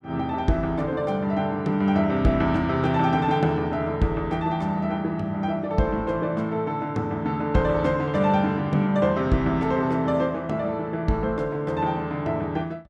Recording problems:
none

